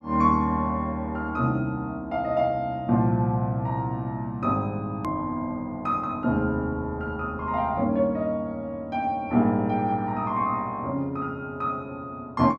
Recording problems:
hard cut with a click; at 5 s

